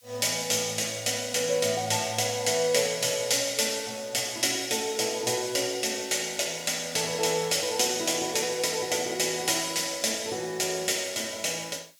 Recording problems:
hiss; slope +6 dB per octave, SNR 30 dB

